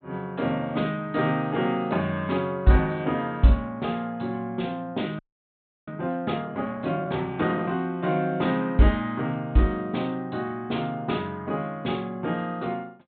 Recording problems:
treble cut off; nothing above 4 kHz
frozen audio; at 5 s for 0.5 s

